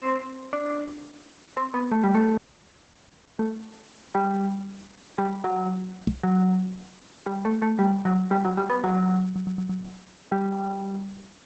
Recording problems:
codec artefacts; Opus, log-spectral distance 8 dB
hiss; slope -2 dB per octave, SNR 26 dB
dropout; at 2.5 s for 1 s
microphone bump; at 6 s; peak +5 dB vs average level
audio stuttering; at 9.5 s

